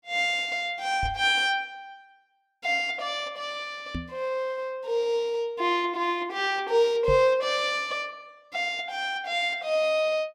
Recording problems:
knock on the microphone; at 1 s, at 4 s and at 7 s; peak -2 dB vs average level

